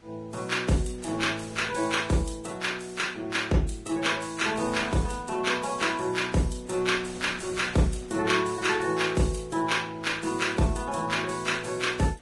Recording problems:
lossy codec; Vorbis, log-spectral distance 5 dB, nothing above 10.7 kHz
wind noise; below 2.4 kHz, SNR 22 dB

